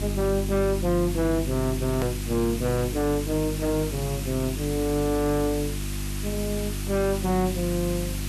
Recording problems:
distortion; hard clipping, signal-to-distortion ratio 11 dB
hum; 50 Hz, harmonics up to 350 Hz, SNR 5 dB
hiss; slope 0 dB per octave, SNR 10 dB
hard cut with a click; at 2 s

